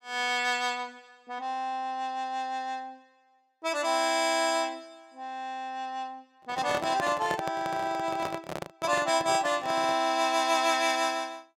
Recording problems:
handling noise; from 6.5 to 10 s; peak -1 dB vs average level

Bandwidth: 16.5 kHz